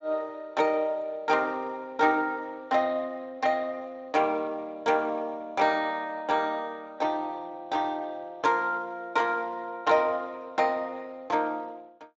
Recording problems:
lossy compression; Speex, log-spectral distance 2 dB

